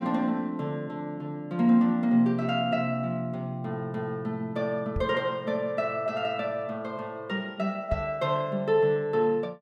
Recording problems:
knock on the microphone; at 5 s and at 8 s; peak 0 dB vs average level

